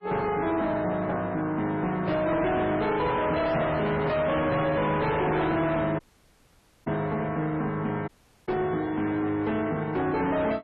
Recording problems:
lossy compression; MP3, log-spectral distance 2 dB
distorted audio; soft clipping, signal-to-distortion ratio 6 dB
dropout; at 6 s for 1 s and at 8 s

